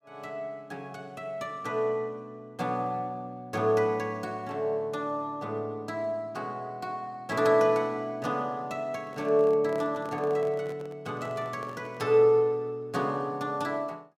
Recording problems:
handling noise; from 9 to 12 s; peak -10 dB vs average level

